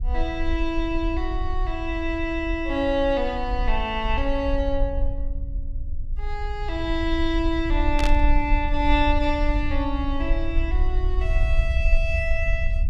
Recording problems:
low-frequency rumble; below 54 Hz, SNR 2 dB
static burst; at 8 s; peak 0 dB vs average level

